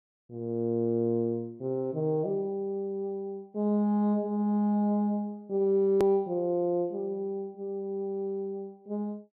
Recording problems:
click at an edit; at 6 s

